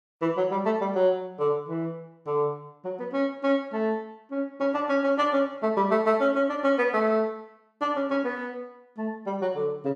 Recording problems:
none

